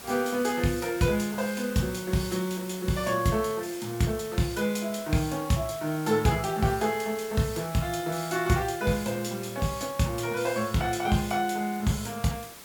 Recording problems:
background hiss; slope -2 dB per octave, SNR 15 dB

